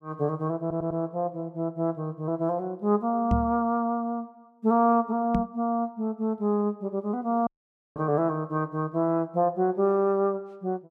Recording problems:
stutter; at 0.5 s
knock on the microphone; at 3.5 s and at 5.5 s; peak +5 dB vs average level
dropout; at 7.5 s

